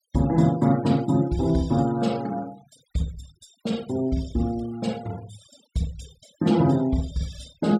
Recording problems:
noise reduction artefacts; signal-to-artefact ratio 23 dB

